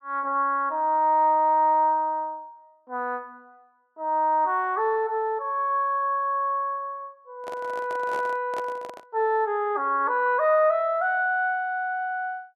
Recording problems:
microphone handling noise; from 7.5 to 9 s; peak -8 dB vs average level

